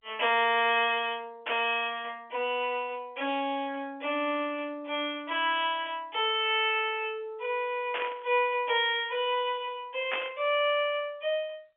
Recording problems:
telephone audio; 340 Hz to 3.4 kHz, G.711
burst of static; at 1.5 s, at 8 s and at 10 s; peak 0 dB vs average level

